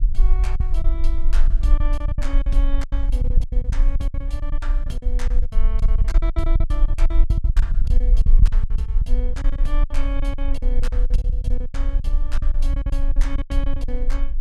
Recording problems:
rumble; below 42 Hz, strongest tone 18 Hz, SNR -12 dB
packet loss; 19% of the sound replaced, filled with silence

